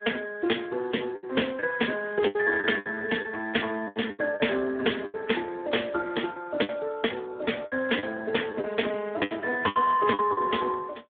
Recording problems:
phone line; 260 Hz to 3.5 kHz, Speex
packet loss; 10% of the sound replaced, filled with the last packet

